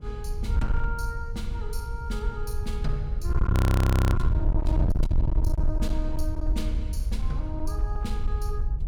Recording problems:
distorted audio; hard clipping, signal-to-distortion ratio 11 dB
wind on the microphone; below 94 Hz, SNR -8 dB
audio freezing; at 3.5 s for 0.5 s

